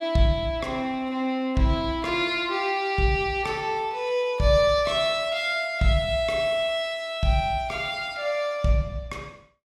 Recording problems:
none

